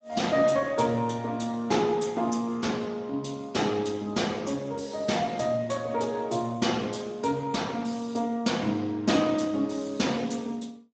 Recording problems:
codec artefacts; Speex, log-spectral distance 4 dB, nothing above 7.6 kHz

